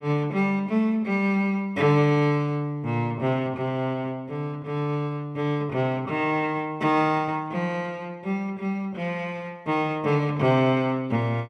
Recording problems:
none

